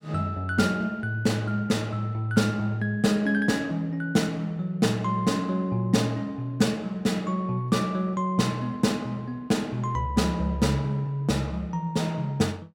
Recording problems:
none

